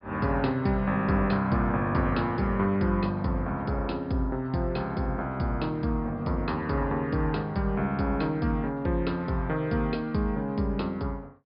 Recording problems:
low-pass filter; nothing above 5.1 kHz

